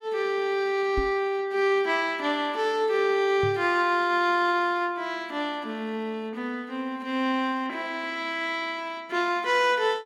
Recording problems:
knock on the microphone; at 1 s and at 3.5 s; peak -2 dB vs average level

